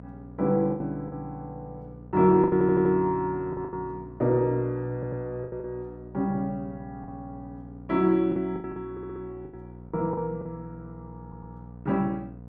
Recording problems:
electrical hum; 60 Hz, harmonics up to 1 kHz, SNR 18 dB
packet loss; 8% of the sound replaced, filled with the last packet
stutter; 4 times, first at 2.5 s

